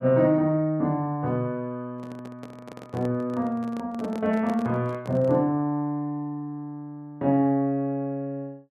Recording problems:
handling noise; from 2 to 5.5 s; peak -6 dB vs average level

